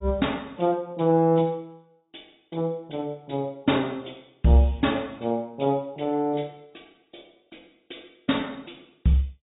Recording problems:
low-pass filter; nothing above 3.8 kHz
codec artefacts; AAC, log-spectral distance 6 dB

